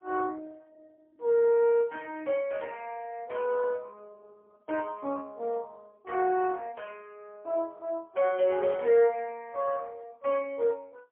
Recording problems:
phone line; 170 Hz to 3.8 kHz, AMR-NB, then MP3

